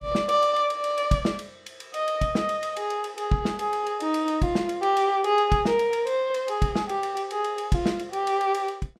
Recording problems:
none

